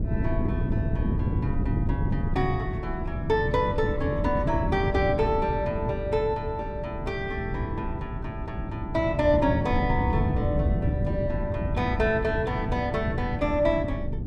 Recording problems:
wind on the microphone; below 190 Hz, SNR 2 dB

